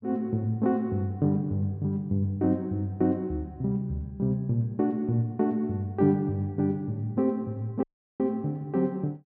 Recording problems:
dropout; at 8 s

